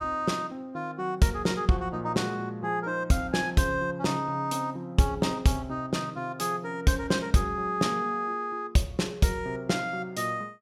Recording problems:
none

